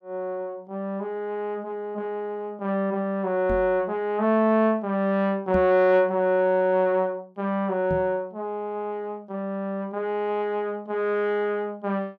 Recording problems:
microphone bump; at 3.5 s, at 5.5 s and at 8 s; peak -1 dB vs average level

